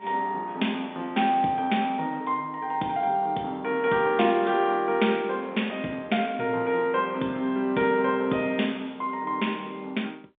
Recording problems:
telephone audio; 170 Hz to 3.6 kHz, G.711

